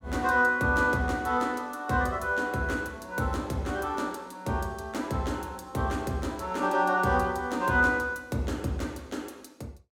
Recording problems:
none

